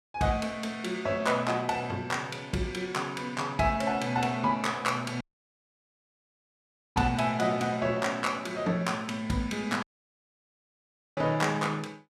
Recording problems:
audio cutting out; at 5 s for 2 s and at 10 s for 1.5 s

